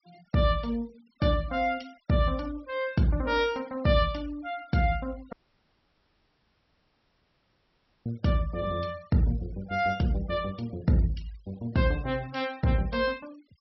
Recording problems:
low-pass filter; nothing above 5.6 kHz
noise reduction artefacts; signal-to-artefact ratio 25 dB
audio cutting out; at 5.5 s for 2.5 s

